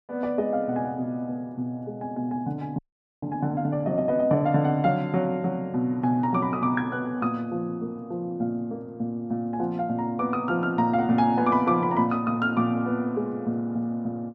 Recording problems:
audio freezing; at 3 s

